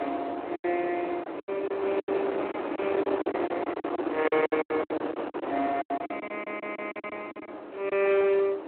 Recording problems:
phone line; 280 Hz to 3.3 kHz, Speex
distorted audio; hard clipping, signal-to-distortion ratio 16 dB
wind noise; below 870 Hz, SNR 5 dB
lost packets; 15% of the sound replaced, filled with silence
audio stuttering; at 6.5 s

